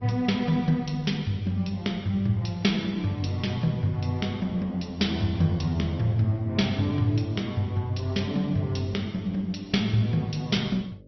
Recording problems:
treble cut off; nothing above 5.8 kHz
lossy codec; Opus, log-spectral distance 3 dB
hum; 50 Hz, harmonics up to 600 Hz, SNR 28 dB

